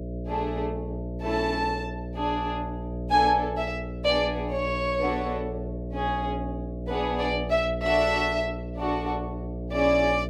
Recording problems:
mains hum; 60 Hz, harmonics up to 660 Hz, SNR 7 dB

